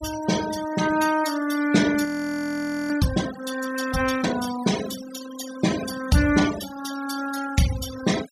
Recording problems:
noise reduction artefacts; signal-to-artefact ratio 11 dB
audio freezing; at 2 s for 1 s

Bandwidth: 15.5 kHz